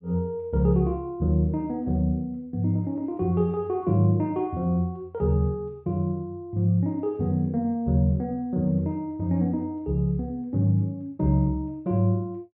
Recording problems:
none

